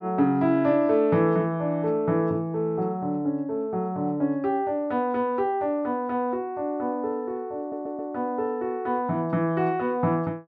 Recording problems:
audio stuttering; at 7.5 s

